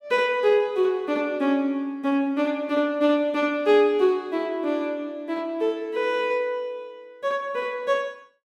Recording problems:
none

